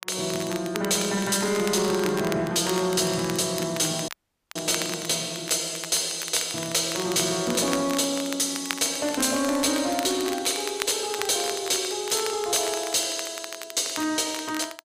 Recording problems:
distortion; soft clipping, signal-to-distortion ratio 11 dB
crackling; vinyl, SNR 12 dB
audio cutting out; at 4 s

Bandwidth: 15 kHz